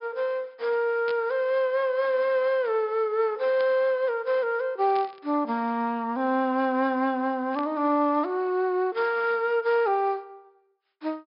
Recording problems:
treble missing; nothing above 5.5 kHz
burst of static; 4 times, first at 1 s; peak -11 dB vs average level

